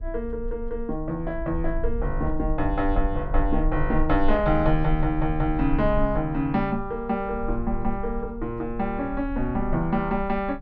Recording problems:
low-frequency rumble; below 42 Hz, strongest tone 18 Hz, SNR 7 dB

